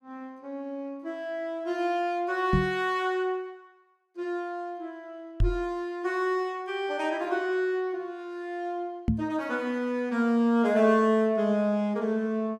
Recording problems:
knock on the microphone; at 2.5 s, at 5.5 s and at 9 s; peak +6 dB vs average level

